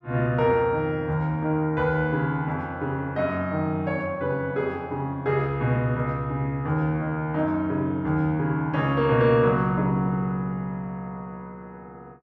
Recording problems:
none

